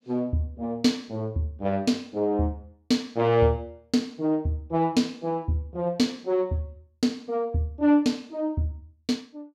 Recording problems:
none

